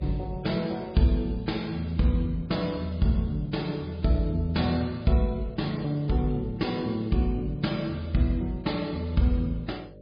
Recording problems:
lossy compression; MP3, log-spectral distance 3 dB, nothing above 11 kHz
hum; 50 Hz, harmonics up to 600 Hz, SNR 23 dB

